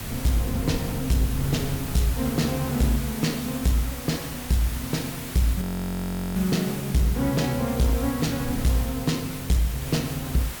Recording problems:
distortion; hard clipping, uneven, signal-to-distortion ratio 11 dB
hiss; slope -2 dB per octave, SNR 10 dB
wind noise; below 180 Hz, SNR 14 dB
frozen audio; at 5.5 s for 0.5 s

